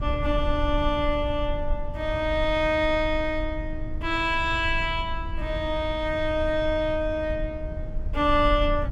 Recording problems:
rumble; below 70 Hz, SNR 8 dB

